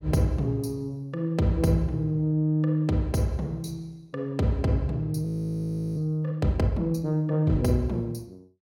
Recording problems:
audio freezing; at 5.5 s for 0.5 s

